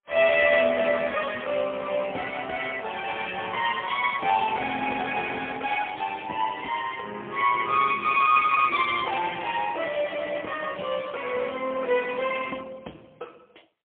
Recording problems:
phone line; 240 Hz to 3.3 kHz, AMR-NB, then MP3

